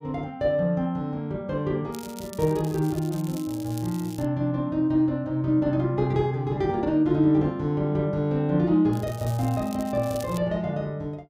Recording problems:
crackling; from 2 to 4.5 s and from 9 to 10 s; loose cable, SNR 19 dB

